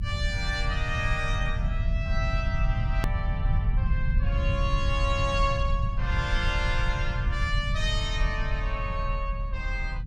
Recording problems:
rumble; below 96 Hz, strongest tone 38 Hz, SNR -2 dB
edit click; at 3 s

